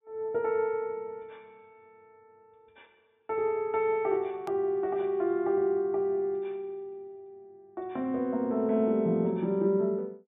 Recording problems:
low-pass filter; nothing above 4 kHz
edit click; at 4.5 s

